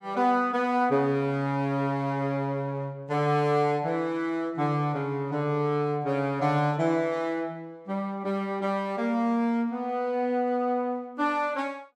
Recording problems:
none

